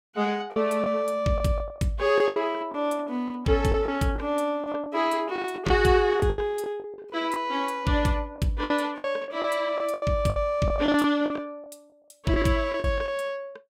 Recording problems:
lost packets; 11% of the sound replaced, filled with the last packet

